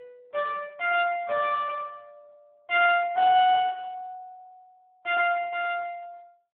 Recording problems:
telephone audio; 450 Hz to 3.5 kHz, Speex

